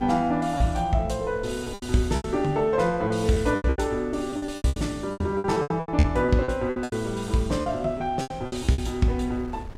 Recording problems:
wind on the microphone; below 130 Hz, SNR 19 dB
packet loss; 15% of the sound replaced, filled with repeated pitch periods

